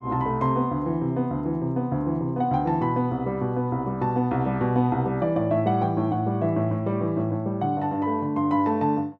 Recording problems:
none

